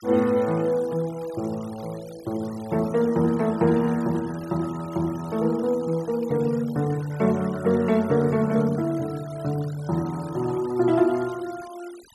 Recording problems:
noise reduction artefacts; signal-to-artefact ratio 21 dB

